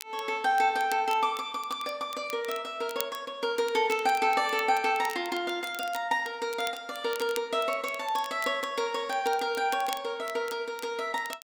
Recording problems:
crackling; vinyl, SNR 16 dB

